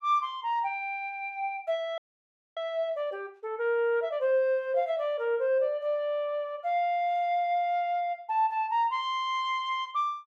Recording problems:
frozen audio; at 2 s for 0.5 s

